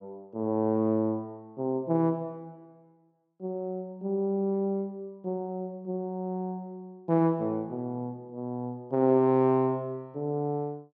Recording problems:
none

